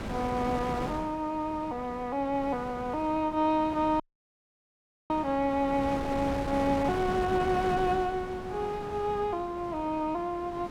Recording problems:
wind on the microphone; below 840 Hz, SNR 9 dB
dropout; at 4 s for 1 s

